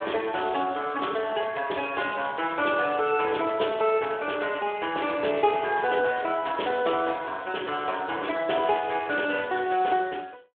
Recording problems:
phone line; 300 Hz to 3.4 kHz, Speex

